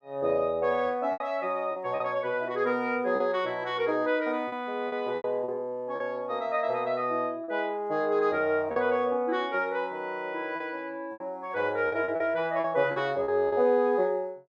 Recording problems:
packet loss; 6% of the sound replaced, filled with repeated pitch periods

